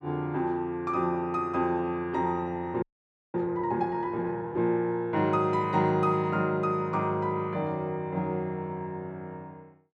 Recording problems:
frozen audio; at 3 s for 0.5 s

